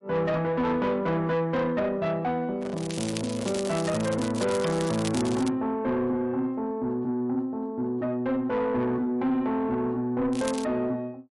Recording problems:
lossy codec; MP3, log-spectral distance 2 dB
distorted audio; soft clipping, signal-to-distortion ratio 11 dB
microphone handling noise; from 2.5 to 4 s; peak -9 dB vs average level
crackle; from 3 to 5.5 s and at 10 s; loose cable, SNR 11 dB

